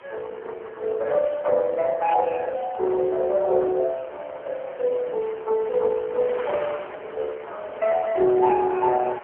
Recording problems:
telephone audio; 320 Hz to 3.4 kHz, AMR-NB
wind on the microphone; below 1.6 kHz, SNR 18 dB

